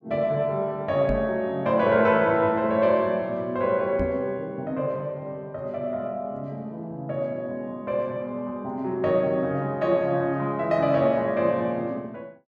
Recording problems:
microphone bump; at 1 s and at 4 s; peak -1 dB vs average level

